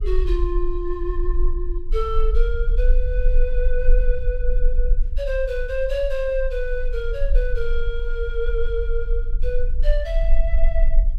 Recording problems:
rumble; below 38 Hz, strongest tone 20 Hz, SNR -3 dB

